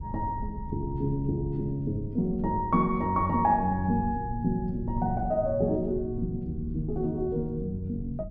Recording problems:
low-frequency rumble; below 120 Hz, SNR 11 dB

